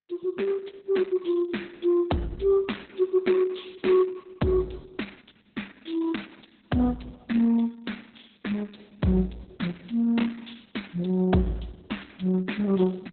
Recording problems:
lossy compression; Opus, log-spectral distance 6 dB, nothing above 4 kHz

